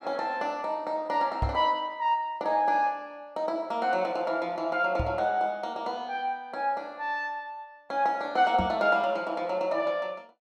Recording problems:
knock on the microphone; at 1.5 s, at 5 s and at 8.5 s; peak +2 dB vs average level

